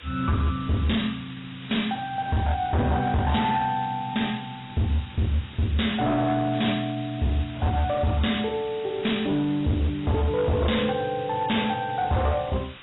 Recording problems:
lossy compression; AAC, log-spectral distance 9 dB, nothing above 3.8 kHz
distortion; hard clipping, uneven, signal-to-distortion ratio 7 dB
hiss; SNR 18 dB

